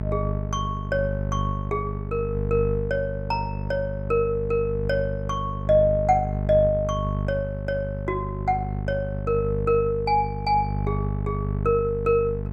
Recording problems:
hum; 50 Hz, harmonics up to 650 Hz, SNR 4 dB

